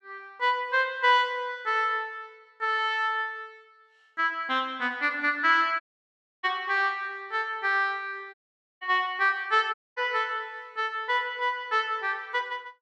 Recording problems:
audio cutting out; at 6 s for 0.5 s, at 8.5 s and at 9.5 s

